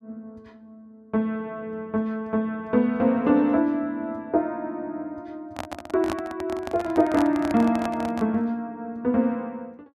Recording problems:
handling noise; from 5.5 to 8.5 s; peak -1 dB vs average level

